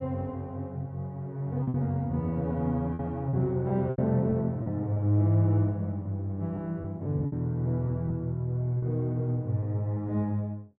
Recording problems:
lost packets; 5% of the sound replaced, filled with repeated pitch periods

